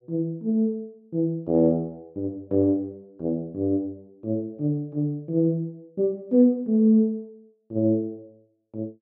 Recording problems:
none

